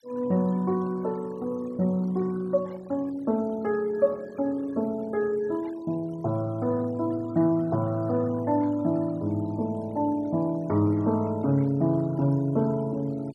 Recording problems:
noise reduction artefacts; signal-to-artefact ratio 24 dB

